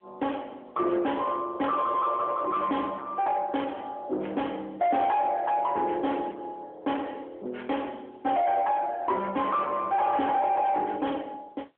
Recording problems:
telephone audio; 300 Hz to 3.3 kHz, AMR-NB
distortion; soft clipping, signal-to-distortion ratio 6 dB

